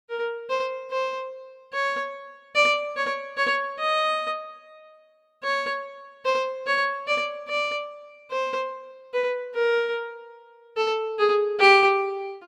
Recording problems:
none

